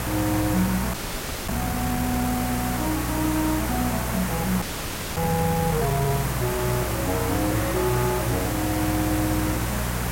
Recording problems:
electrical hum; 60 Hz, harmonics up to 420 Hz, SNR 4 dB
hiss; slope -4 dB per octave, SNR 2 dB
audio freezing; at 1 s for 0.5 s and at 4.5 s for 0.5 s

